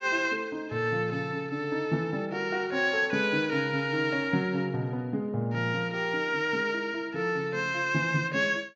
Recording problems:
low-pass filter; nothing above 8 kHz

